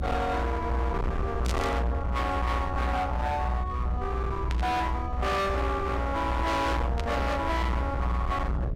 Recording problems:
distorted audio; hard clipping, signal-to-distortion ratio 7 dB
hum; 60 Hz, harmonics up to 660 Hz, SNR 15 dB
rumble; below 180 Hz, strongest tone 60 Hz, SNR 1 dB
burst of static; at 1.5 s, at 4.5 s and at 7 s; peak -2 dB vs average level

